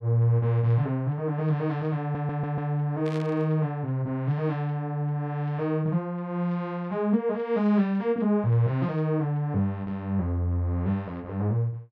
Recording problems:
stutter; at 2 s
static burst; at 3 s; peak -12 dB vs average level

